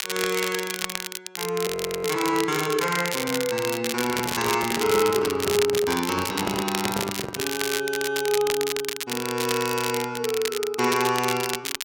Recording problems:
crackling; vinyl, SNR 4 dB
frozen audio; at 1.5 s
microphone handling noise; from 4 to 7.5 s; peak 0 dB vs average level

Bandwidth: 16.5 kHz